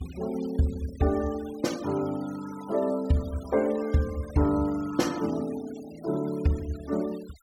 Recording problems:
noise reduction artefacts; signal-to-artefact ratio 19 dB

